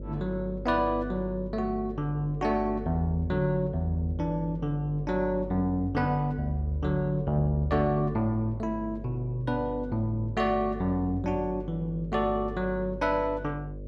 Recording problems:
hum; 50 Hz, harmonics up to 600 Hz, SNR 11 dB

